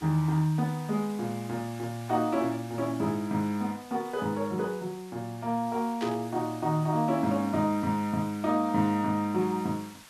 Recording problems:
background hiss; slope 0 dB per octave, SNR 20 dB
burst of static; at 6 s; peak -6 dB vs average level

